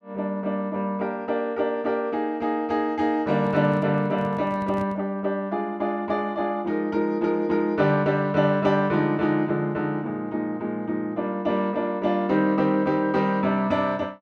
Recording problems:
handling noise; from 3.5 to 5 s; peak -10 dB vs average level

